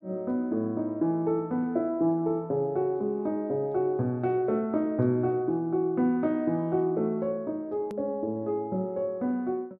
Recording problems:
edit click; at 8 s

